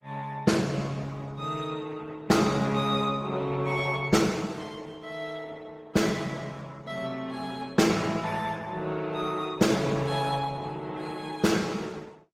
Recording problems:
lossy compression; Opus, then Opus, log-spectral distance 4 dB

